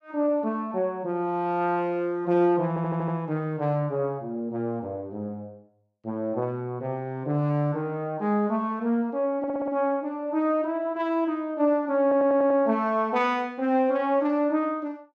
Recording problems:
audio stuttering; at 2.5 s, at 9.5 s and at 12 s

